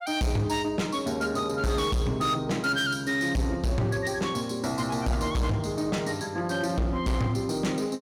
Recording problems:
distortion; hard clipping, signal-to-distortion ratio 8 dB

